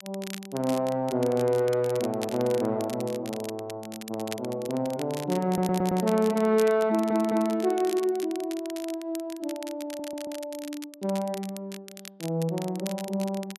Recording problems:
crackle; vinyl, SNR 15 dB
audio stuttering; at 5.5 s, at 7 s and at 10 s

